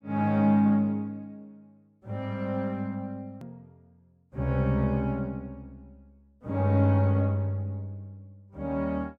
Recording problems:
click at an edit; at 3.5 s

